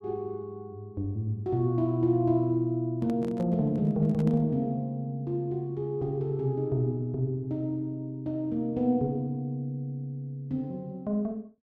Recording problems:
microphone handling noise; from 3 to 4.5 s; peak -10 dB vs average level

